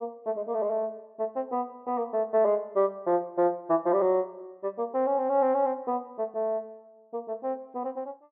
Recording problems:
treble missing; nothing above 4 kHz

